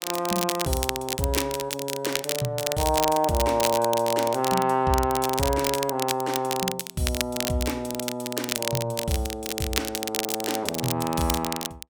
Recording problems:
crackle; vinyl, SNR 4 dB

